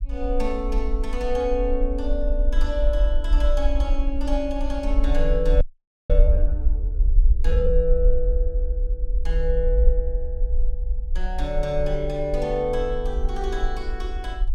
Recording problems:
low-frequency rumble; below 48 Hz, SNR -2 dB
frozen audio; at 5.5 s

